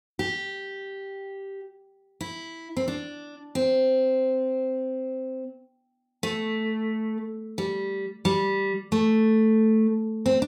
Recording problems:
none

